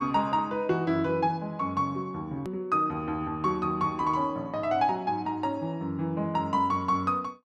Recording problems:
hard cut with a click; at 2.5 s

